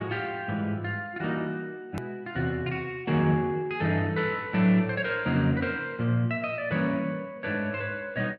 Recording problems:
edit click; at 2 s

